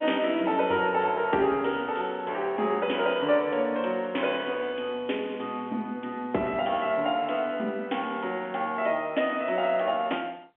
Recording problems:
phone line; 190 Hz to 3.4 kHz, G.711

